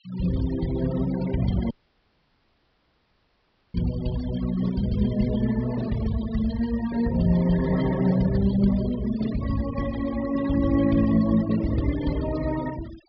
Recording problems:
treble missing; nothing above 5.5 kHz
noise reduction artefacts; signal-to-artefact ratio 16 dB
audio cutting out; at 1.5 s for 2 s

